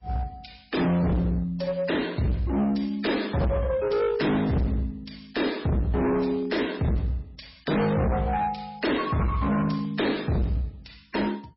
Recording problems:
codec artefacts; MP3, log-spectral distance 5 dB, nothing above 5.5 kHz
distorted audio; hard clipping, uneven, signal-to-distortion ratio 5 dB

